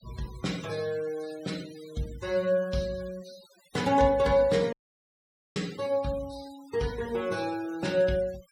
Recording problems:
noise reduction artefacts; signal-to-artefact ratio 19 dB
dropout; at 4.5 s for 1 s

